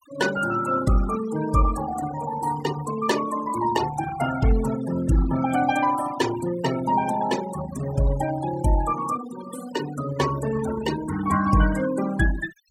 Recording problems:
noise reduction artefacts; signal-to-artefact ratio 11 dB

